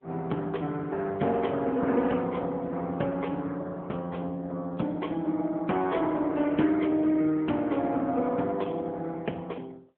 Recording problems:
phone line; 170 Hz to 3.2 kHz, AMR-NB

